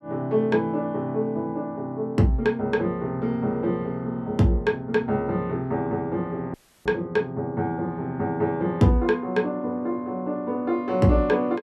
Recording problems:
dropout; at 6.5 s

